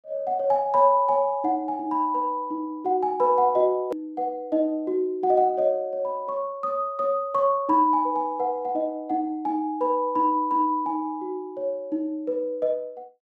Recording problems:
edit click; at 4 s

